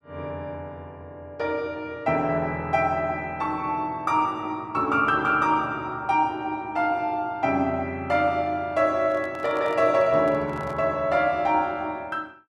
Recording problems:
microphone handling noise; from 9 to 11 s; peak -9 dB vs average level

